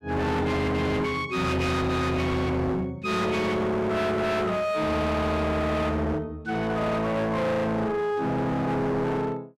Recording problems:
distortion; hard clipping, uneven, signal-to-distortion ratio 6 dB

